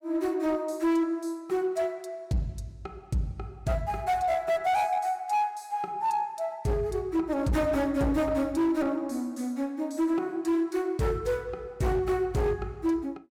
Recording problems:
distorted audio; hard clipping, signal-to-distortion ratio 11 dB

